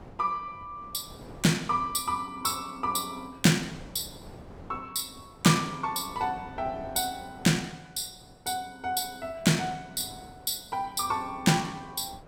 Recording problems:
wind noise; below 590 Hz, SNR 21 dB

